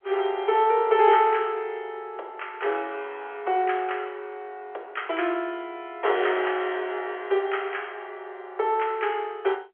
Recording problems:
phone line; 320 Hz to 3.3 kHz, G.711

